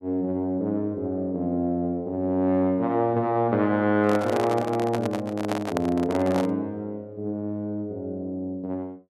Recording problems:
microphone handling noise; from 4 to 6.5 s; peak +1 dB vs average level

